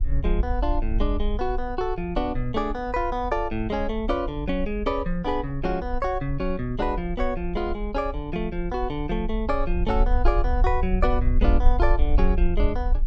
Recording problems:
low-frequency rumble; below 52 Hz, SNR 2 dB

